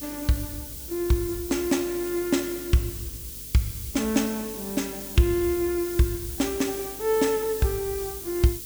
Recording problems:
mains hum; 50 Hz, harmonics up to 500 Hz, SNR 23 dB
hiss; slope +7 dB per octave, SNR 9 dB

